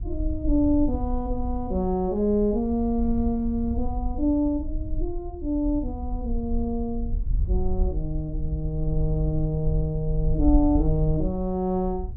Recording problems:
wind noise; below 58 Hz, SNR 5 dB

